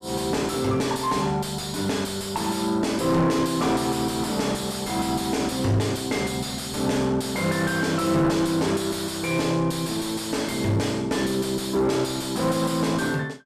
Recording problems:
distortion; soft clipping, signal-to-distortion ratio 7 dB

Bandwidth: 14 kHz